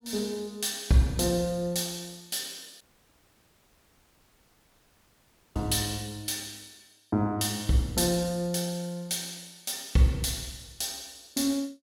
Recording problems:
audio cutting out; at 3 s for 2.5 s

